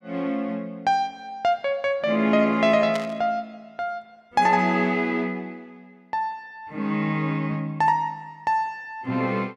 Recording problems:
burst of static; at 3 s; peak -5 dB vs average level

